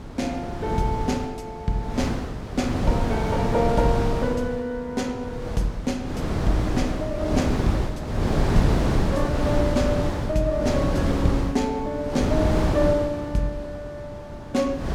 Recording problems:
mains hum; 50 Hz, harmonics up to 1.3 kHz, SNR 25 dB
wind noise; below 400 Hz, SNR 0 dB

